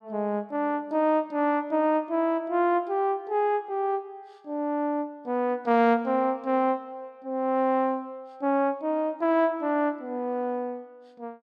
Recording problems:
none

